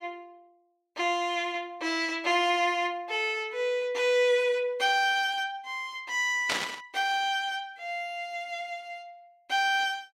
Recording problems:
burst of static; at 6.5 s; peak +3 dB vs average level

